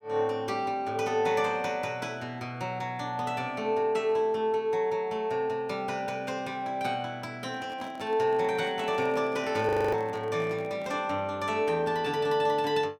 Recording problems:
microphone handling noise; from 7.5 to 11 s; peak -10 dB vs average level
audio freezing; at 9.5 s

